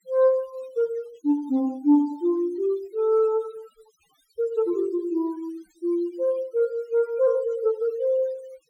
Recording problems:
noise reduction artefacts; signal-to-artefact ratio 27 dB

